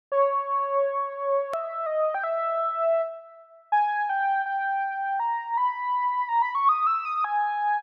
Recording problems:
click at an edit; at 1.5 s

